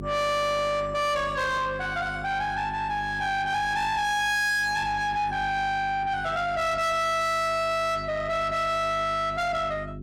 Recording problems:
distorted audio; soft clipping, signal-to-distortion ratio 7 dB
hum; 50 Hz, harmonics up to 2.4 kHz, SNR 13 dB

